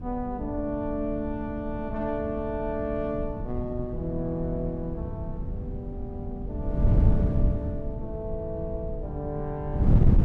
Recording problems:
wind on the microphone; below 140 Hz, SNR -2 dB

